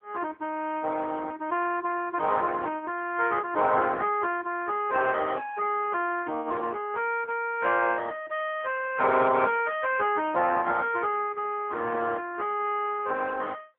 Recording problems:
telephone audio; 280 Hz to 3.3 kHz, AMR-NB

